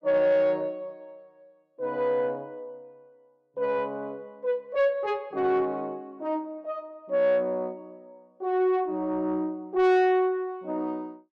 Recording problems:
distortion; soft clipping, signal-to-distortion ratio 11 dB

